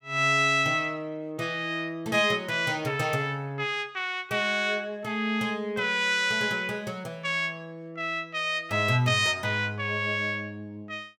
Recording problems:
none

